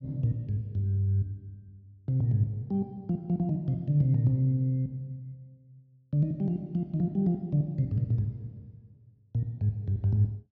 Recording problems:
none

